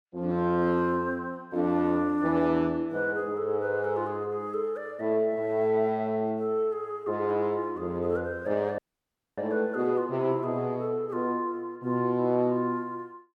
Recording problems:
dropout; at 9 s for 0.5 s

